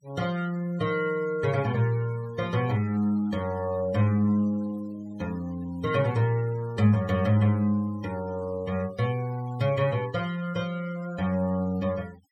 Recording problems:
noise reduction artefacts; signal-to-artefact ratio 22 dB

